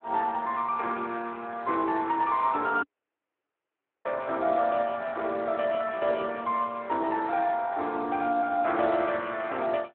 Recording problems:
telephone audio; 260 Hz to 3.6 kHz, Speex
dropout; at 3 s for 1 s

